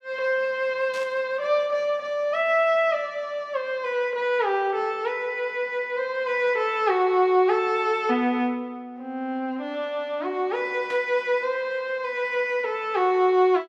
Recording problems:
burst of static; at 1 s and at 11 s; peak -12 dB vs average level

